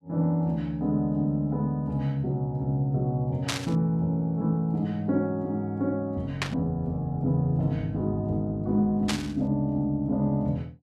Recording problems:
burst of static; at 3.5 s, at 6.5 s and at 9 s; peak +3 dB vs average level

